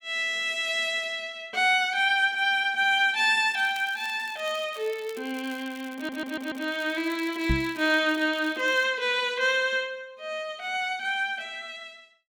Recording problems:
crackle; from 3.5 to 9 s; loose cable, SNR 23 dB
audio stuttering; at 6 s
microphone bump; at 7.5 s; peak +3 dB vs average level

